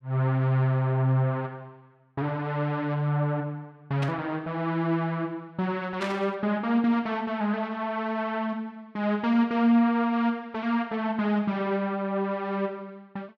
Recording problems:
burst of static; at 4 s and at 6 s; peak -4 dB vs average level

